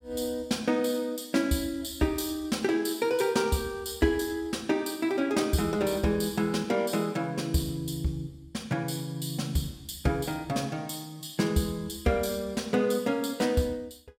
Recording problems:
none

